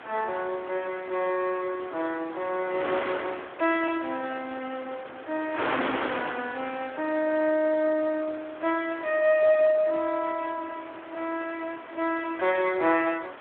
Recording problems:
phone line; 240 Hz to 3.6 kHz, Speex
wind on the microphone; below 1.8 kHz, SNR 10 dB

